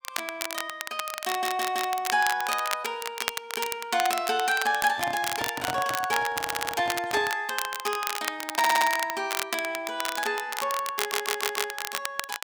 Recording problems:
crackling; vinyl, SNR 4 dB
audio stuttering; 4 times, first at 1.5 s
handling noise; from 5 to 7.5 s; peak -2 dB vs average level

